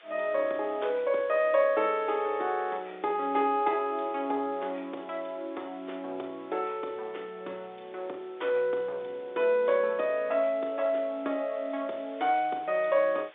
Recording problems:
telephone audio; 300 Hz to 3.8 kHz, G.711
background hiss; SNR 26 dB

